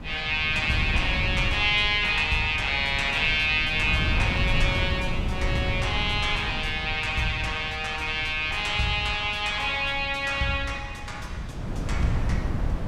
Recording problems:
wind noise; below 160 Hz, SNR 8 dB

